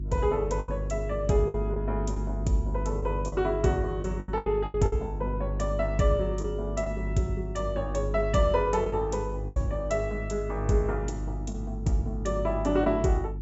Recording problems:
treble missing; nothing above 8 kHz
electrical hum; 50 Hz, harmonics up to 350 Hz, SNR 5 dB
lost packets; 6% of the sound replaced, filled with the last packet

